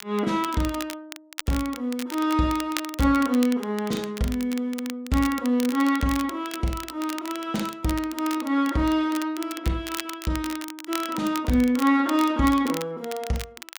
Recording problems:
crackling; vinyl, SNR 13 dB

